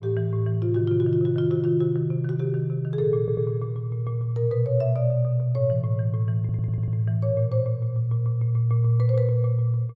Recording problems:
stutter; at 3 s and at 6.5 s

